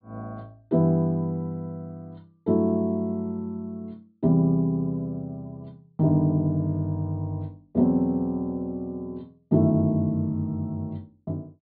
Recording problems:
treble cut off; nothing above 4.6 kHz

